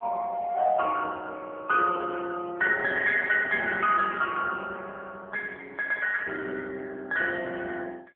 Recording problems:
telephone audio; 370 Hz to 2.8 kHz, AMR-NB

